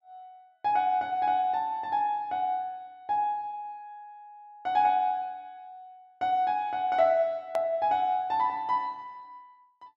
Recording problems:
hard cut with a click; at 7.5 s

